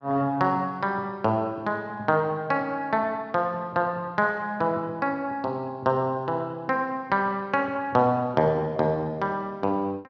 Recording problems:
none

